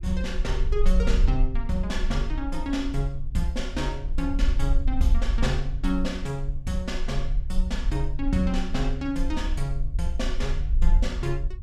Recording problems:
rumble; below 48 Hz, strongest tone 22 Hz, SNR -1 dB

